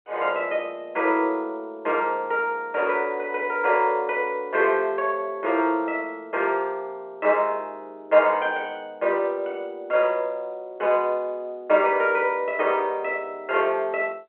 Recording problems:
phone line; 300 Hz to 3.3 kHz, G.711

